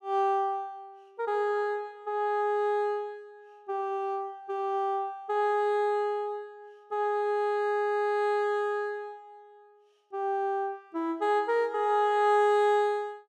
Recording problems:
none

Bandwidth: 14 kHz